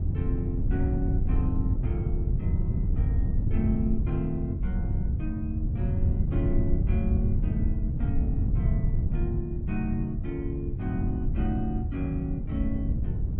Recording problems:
wind on the microphone; below 110 Hz, SNR -5 dB

